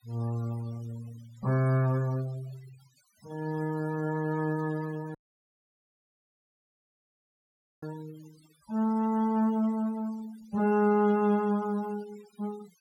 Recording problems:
denoising artefacts; signal-to-artefact ratio 23 dB
dropout; at 5 s for 2.5 s

